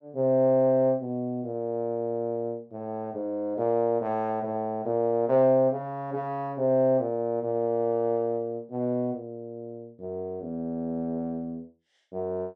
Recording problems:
none

